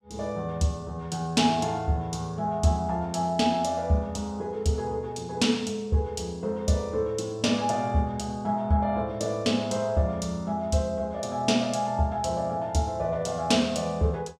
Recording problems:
none

